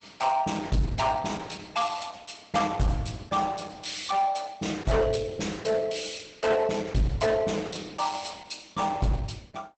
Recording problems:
lossy codec; Opus, log-spectral distance 6 dB, nothing above 8 kHz
distortion; hard clipping, signal-to-distortion ratio 10 dB

